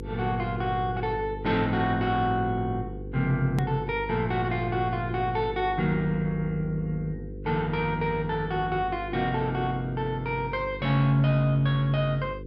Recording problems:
electrical hum; 50 Hz, harmonics up to 500 Hz, SNR 11 dB
edit click; at 3.5 s

